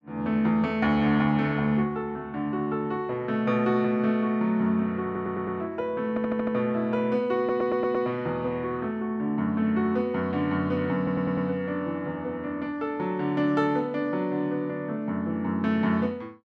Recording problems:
stutter; 4 times, first at 5 s

